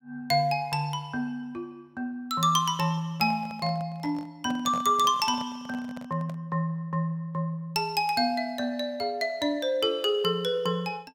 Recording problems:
handling noise; from 3 to 6.5 s; peak -7 dB vs average level

